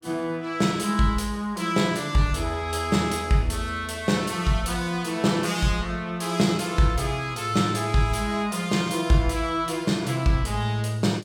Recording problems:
none

